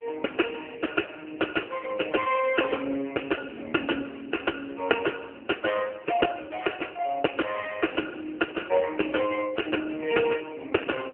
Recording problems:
telephone audio; 220 Hz to 2.6 kHz, AMR-NB

